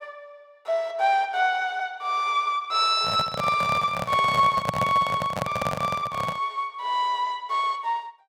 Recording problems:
microphone handling noise; from 3 to 6.5 s; peak +1 dB vs average level

